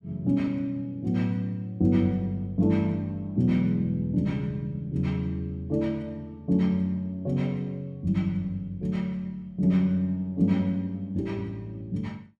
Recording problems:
none

